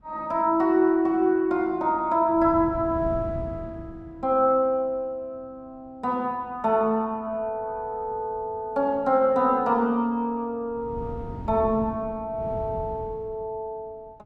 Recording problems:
wind on the microphone; below 210 Hz, SNR 14 dB

